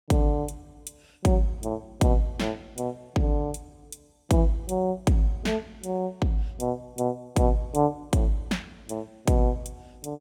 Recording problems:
none

